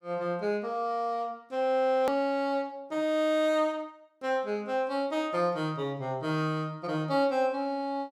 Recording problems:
edit click; at 2 s

